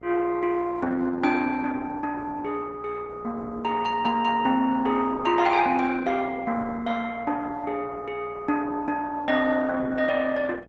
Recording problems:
codec artefacts; Opus, log-spectral distance 4 dB, nothing above 7.6 kHz
hum; 60 Hz, harmonics up to 1.3 kHz, SNR 25 dB

